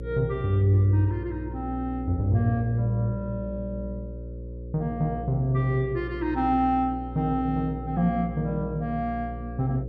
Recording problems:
hum; 60 Hz, harmonics up to 540 Hz, SNR 10 dB

